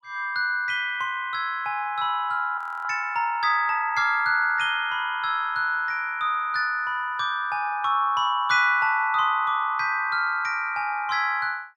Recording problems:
audio freezing; at 2.5 s

